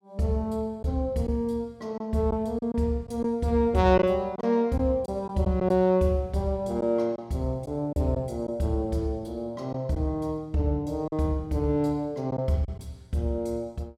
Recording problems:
lost packets; 3% of the sound replaced, filled with silence

